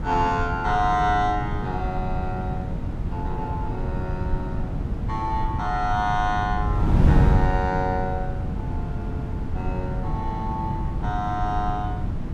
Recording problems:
wind noise; below 160 Hz, SNR 0 dB

